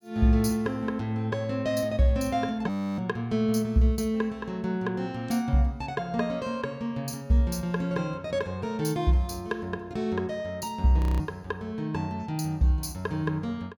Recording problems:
audio freezing; at 2.5 s and at 11 s

